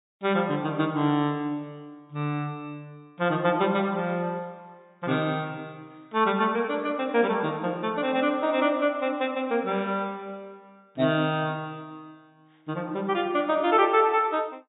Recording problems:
treble missing; nothing above 4 kHz

